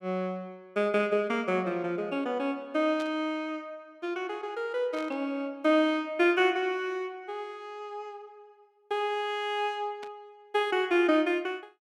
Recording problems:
burst of static; at 3 s, at 5 s and at 10 s; peak -12 dB vs average level

